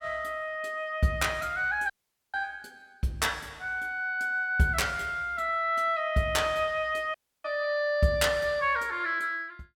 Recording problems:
dropout; at 2 s and at 7 s

